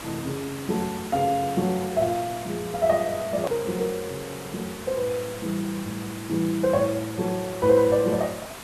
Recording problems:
background hiss; slope -3 dB per octave, SNR 12 dB
hard cut with a click; at 3.5 s

